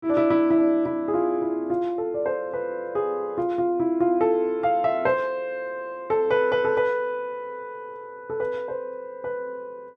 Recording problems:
none

